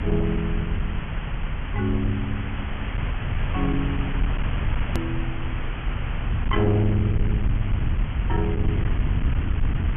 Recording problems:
treble missing; nothing above 3.3 kHz
distortion; hard clipping, uneven, signal-to-distortion ratio 12 dB
hiss; SNR 8 dB
low-frequency rumble; below 100 Hz, SNR 0 dB
click at an edit; at 5 s

